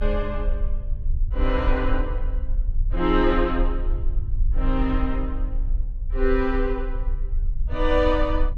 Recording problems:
low-frequency rumble; below 46 Hz, strongest tone 30 Hz, SNR 2 dB

